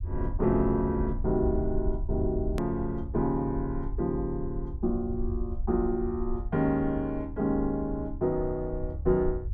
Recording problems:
low-frequency rumble; below 72 Hz, SNR 7 dB
hard cut with a click; at 2.5 s

